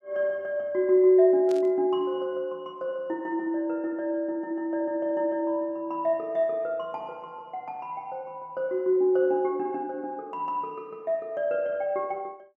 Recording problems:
burst of static; at 1.5 s; peak -13 dB vs average level

